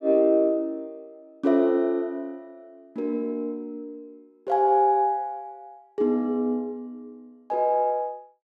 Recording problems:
none

